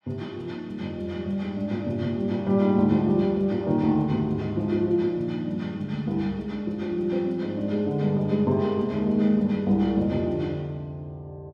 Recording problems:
none

